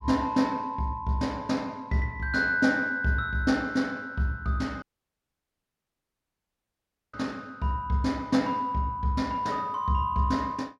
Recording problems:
dropout; at 5 s for 2.5 s

